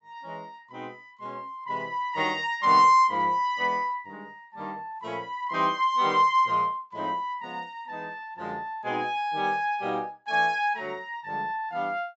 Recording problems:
low-pass filter; nothing above 8 kHz

